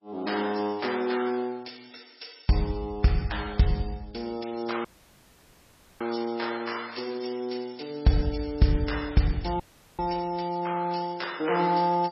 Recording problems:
codec artefacts; MP3, log-spectral distance 7 dB, nothing above 5.5 kHz
dropout; at 5 s for 1 s and at 9.5 s

